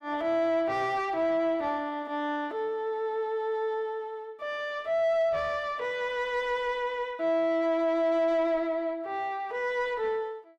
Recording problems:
distortion; soft clipping, signal-to-distortion ratio 11 dB

